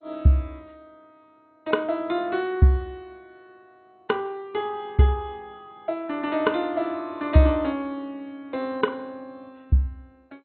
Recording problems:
lossy compression; MP2, log-spectral distance 2 dB, nothing above 3.6 kHz

